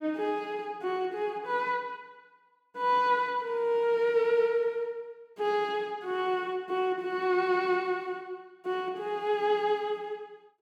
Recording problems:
none

